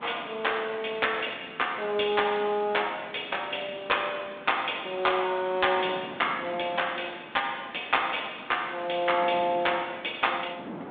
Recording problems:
phone line; 220 Hz to 3.7 kHz, G.726
wind on the microphone; below 830 Hz, SNR 18 dB

